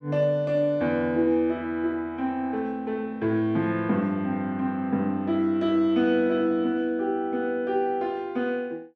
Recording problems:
none

